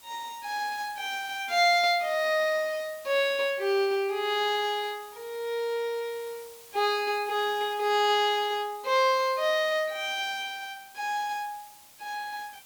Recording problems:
background hiss; slope 0 dB per octave, SNR 21 dB

